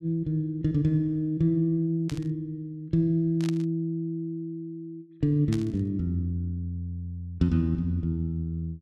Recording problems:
static burst; at 2 s, at 3.5 s and at 5.5 s; peak -7 dB vs average level

